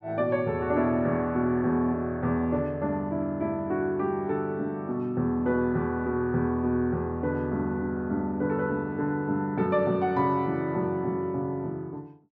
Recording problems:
none

